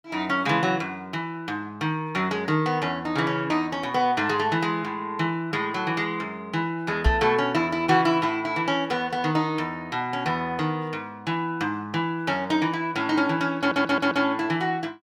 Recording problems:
knock on the microphone; at 7 s; peak +7 dB vs average level
audio stuttering; at 14 s

